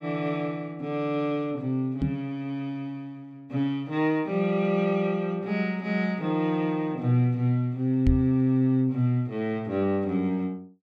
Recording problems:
knock on the microphone; at 2 s and at 8 s; peak +5 dB vs average level

